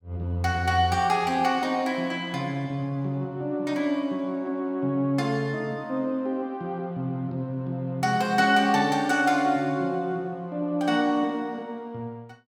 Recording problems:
none

